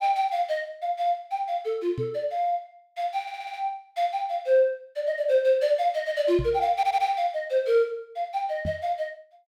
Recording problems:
knock on the microphone; at 2 s, at 6.5 s and at 8.5 s; peak -1 dB vs average level
stutter; at 3 s and at 7 s

